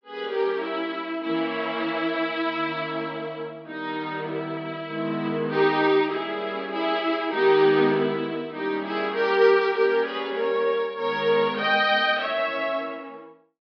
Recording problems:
treble missing; nothing above 5.5 kHz

